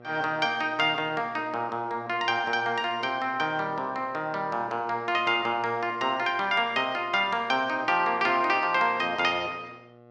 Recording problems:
mains hum; 60 Hz, harmonics up to 2 kHz, SNR 25 dB

